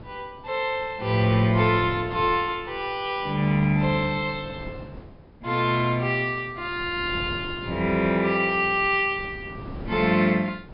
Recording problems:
treble missing; nothing above 5.5 kHz
wind on the microphone; below 370 Hz, SNR 17 dB

